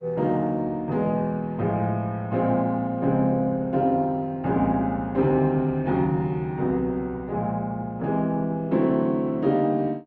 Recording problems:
lossy compression; Opus, log-spectral distance 2 dB

